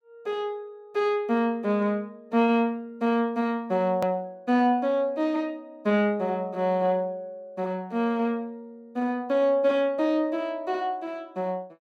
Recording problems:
edit click; at 4 s

